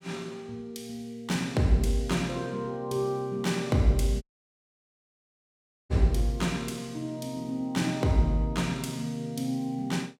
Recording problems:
audio cutting out; at 4 s for 1.5 s

